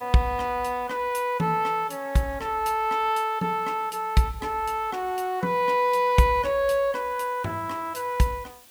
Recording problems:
background hiss; slope 0 dB per octave, SNR 25 dB

